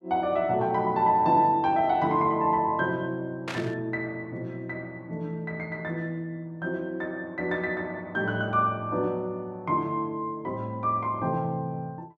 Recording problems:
burst of static; at 3.5 s; peak -3 dB vs average level

